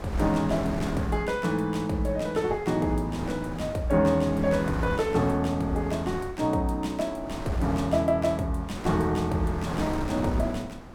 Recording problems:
wind on the microphone; below 690 Hz, SNR 10 dB

